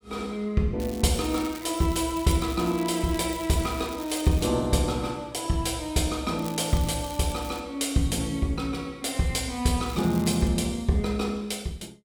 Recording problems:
crackle; from 1 to 4.5 s, from 6.5 to 7.5 s and at 10 s; loose cable, SNR 16 dB

